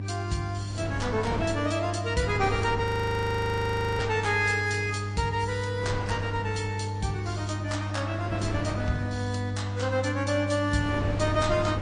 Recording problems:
codec artefacts; MP3, log-spectral distance 2 dB, nothing above 15.1 kHz
electrical hum; 50 Hz, harmonics up to 300 Hz, SNR 4 dB
wind noise; below 450 Hz, SNR 8 dB
audio freezing; at 3 s for 1 s

